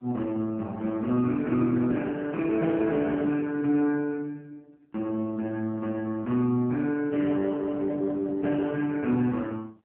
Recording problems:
telephone audio; 190 Hz to 2.3 kHz, AMR-NB

